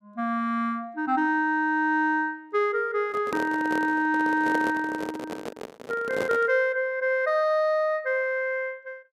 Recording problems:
handling noise; from 3 to 6.5 s; peak -1 dB vs average level

